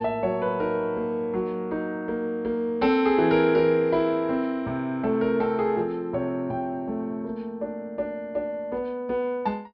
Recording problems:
treble missing; nothing above 5.5 kHz

